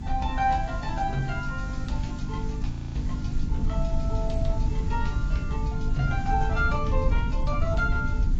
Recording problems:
lossy codec; AAC, log-spectral distance 2 dB
hum; 50 Hz, harmonics up to 300 Hz, SNR 5 dB
hiss; slope -3 dB per octave, SNR 19 dB
low-frequency rumble; below 86 Hz, SNR -1 dB
audio freezing; at 2.5 s

